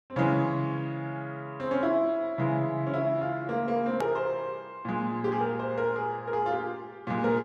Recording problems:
edit click; at 4 s

